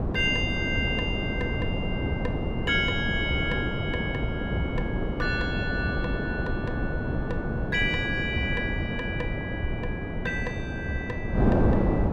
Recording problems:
wind noise; below 380 Hz, SNR -1 dB

